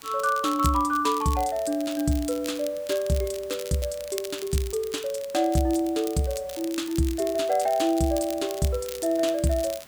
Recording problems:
background hiss; slope -2 dB per octave, SNR 24 dB
crackling; vinyl, SNR 15 dB

